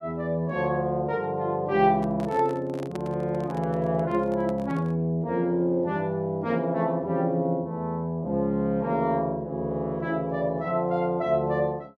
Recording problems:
microphone handling noise; from 2 to 5 s; peak -8 dB vs average level

